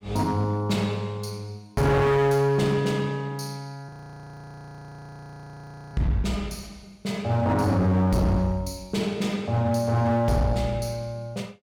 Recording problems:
distortion; hard clipping, uneven, signal-to-distortion ratio 7 dB
frozen audio; at 4 s for 2 s

